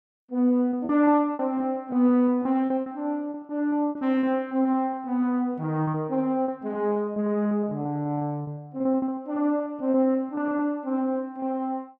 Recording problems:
lost packets; 15% of the sound replaced, filled with repeated pitch periods

